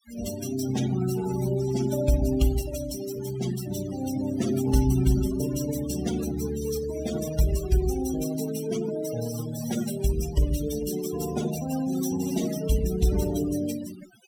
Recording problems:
noise reduction artefacts; signal-to-artefact ratio 10 dB

